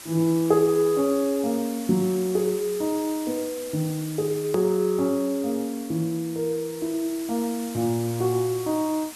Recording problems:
hiss; slope 0 dB per octave, SNR 14 dB
edit click; at 4.5 s

